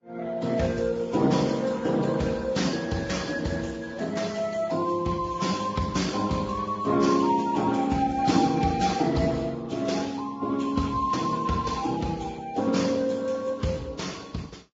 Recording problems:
lossy codec; Speex, then Vorbis, log-spectral distance 4 dB, nothing above 7.3 kHz

